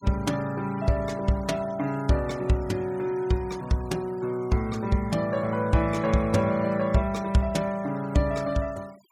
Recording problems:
noise reduction artefacts; signal-to-artefact ratio 23 dB

